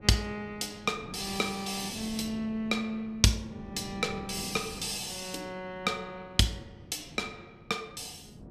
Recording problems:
wind on the microphone; below 330 Hz, SNR 16 dB

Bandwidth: 14.5 kHz